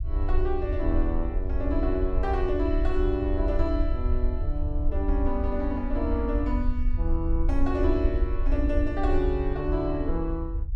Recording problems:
rumble; below 62 Hz, SNR 0 dB

